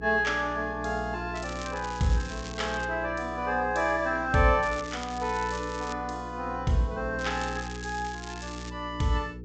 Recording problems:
treble missing; nothing above 8 kHz
hum; 60 Hz, harmonics up to 480 Hz, SNR 12 dB
crackling; from 1.5 to 3 s, from 4.5 to 6 s and from 7 to 8.5 s; loose cable, SNR 15 dB

